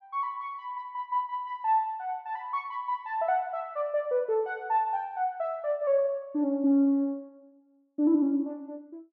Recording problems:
none

